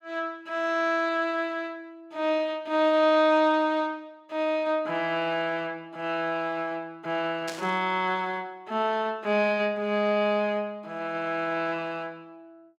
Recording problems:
burst of static; at 7.5 s; peak -4 dB vs average level

